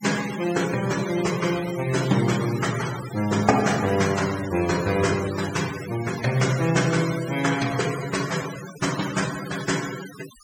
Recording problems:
denoising artefacts; signal-to-artefact ratio 10 dB

